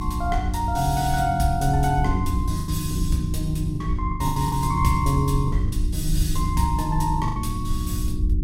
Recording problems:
hum; 60 Hz, harmonics up to 360 Hz, SNR 7 dB
rumble; below 70 Hz, SNR 5 dB
lost packets; 6% of the sound replaced, filled with the last packet

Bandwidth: 16 kHz